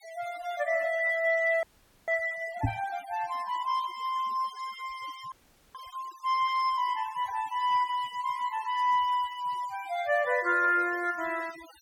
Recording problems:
noise reduction artefacts; signal-to-artefact ratio 20 dB
frozen audio; at 1.5 s and at 5.5 s
microphone bump; at 2.5 s; peak +4 dB vs average level

